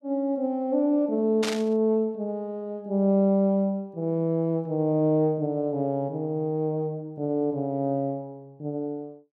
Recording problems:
burst of static; at 1.5 s; peak -1 dB vs average level

